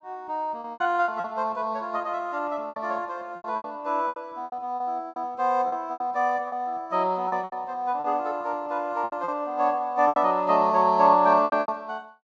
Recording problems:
treble cut off; nothing above 8 kHz
lost packets; 12% of the sound replaced, filled with repeated pitch periods

